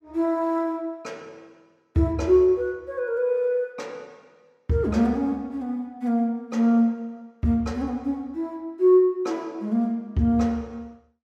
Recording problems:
none

